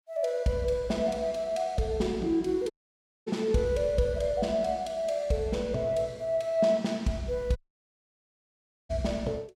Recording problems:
audio cutting out; at 2.5 s for 0.5 s and at 7.5 s for 1.5 s

